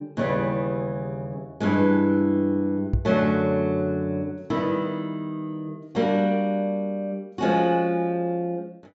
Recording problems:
treble cut off; nothing above 7.7 kHz
knock on the microphone; at 3 s; peak +4 dB vs average level

